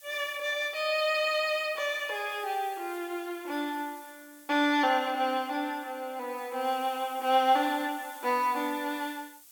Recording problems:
background hiss; slope +3 dB per octave, SNR 20 dB

